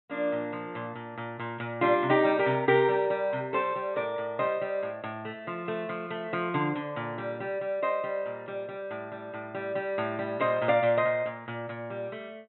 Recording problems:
treble cut off; nothing above 3.8 kHz

